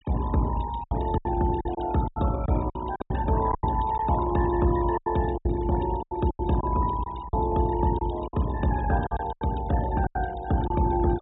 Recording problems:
treble cut off; nothing above 4 kHz
denoising artefacts; signal-to-artefact ratio 16 dB
lost packets; 11% of the sound replaced, filled with silence

